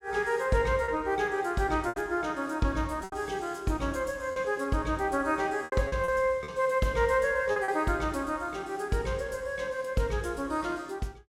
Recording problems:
lost packets; 5% of the sound replaced, filled with repeated pitch periods

